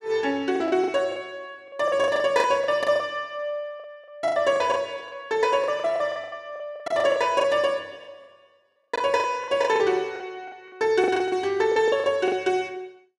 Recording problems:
lost packets; 15% of the sound replaced, filled with the last packet

